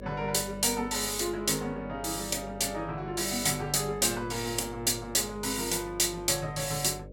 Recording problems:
electrical hum; 50 Hz, harmonics up to 600 Hz, SNR 17 dB

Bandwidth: 17 kHz